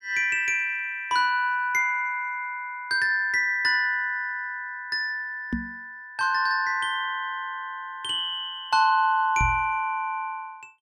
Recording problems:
microphone bump; at 5.5 s and at 9.5 s; peak 0 dB vs average level

